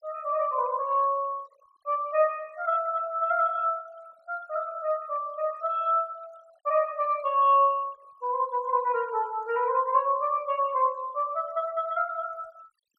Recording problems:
noise reduction artefacts; signal-to-artefact ratio 27 dB

